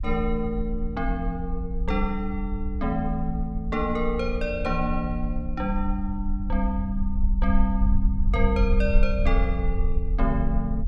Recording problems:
low-frequency rumble; below 54 Hz, strongest tone 22 Hz, SNR 1 dB

